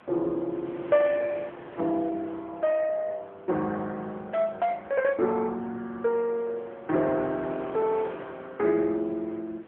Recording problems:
telephone audio; 260 Hz to 3.3 kHz, AMR-NB
wind noise; below 1.4 kHz, SNR 19 dB

